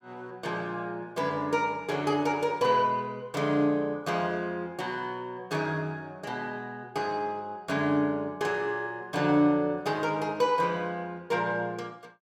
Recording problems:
none

